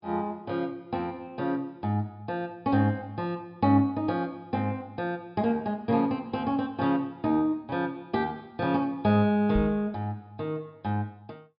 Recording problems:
treble cut off; nothing above 5.5 kHz
microphone thump; at 9.5 s; peak +2 dB vs average level

